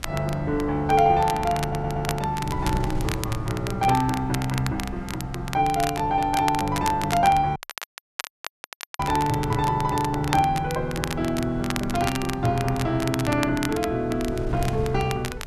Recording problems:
wind noise; below 110 Hz, SNR 14 dB
crackle; vinyl, SNR 11 dB
stutter; at 1.5 s
audio cutting out; at 7.5 s for 1.5 s

